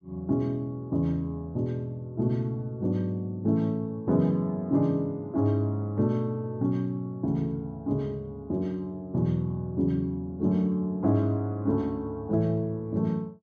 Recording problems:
none

